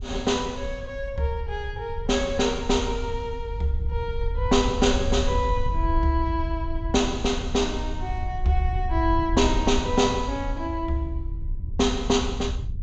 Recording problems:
low-pass filter; nothing above 8 kHz
wind on the microphone; below 72 Hz, SNR 5 dB

